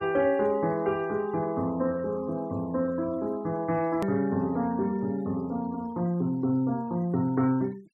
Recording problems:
denoising artefacts; signal-to-artefact ratio 26 dB
edit click; at 4 s

